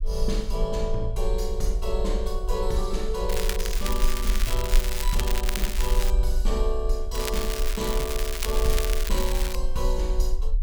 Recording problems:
low-frequency rumble; below 44 Hz, SNR -1 dB
crackle; from 3.5 to 6 s and from 7 to 9.5 s; loose cable, SNR 2 dB

